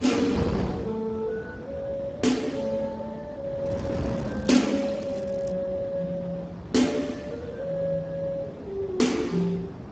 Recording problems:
lossy compression; Speex, log-spectral distance 3 dB, nothing above 7.6 kHz
wind on the microphone; below 480 Hz, SNR 8 dB
crackling; from 3.5 to 5.5 s; loose cable, SNR 25 dB

